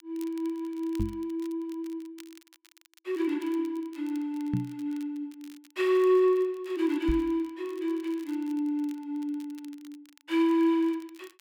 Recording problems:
crackling; vinyl, SNR 27 dB
knock on the microphone; at 1 s, at 4.5 s and at 7 s; peak +3 dB vs average level

